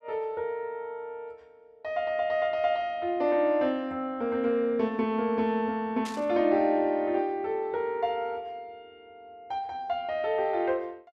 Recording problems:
burst of static; at 6 s; peak -8 dB vs average level

